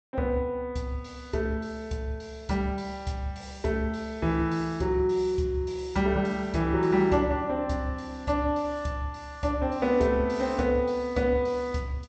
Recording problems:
treble cut off; nothing above 8 kHz

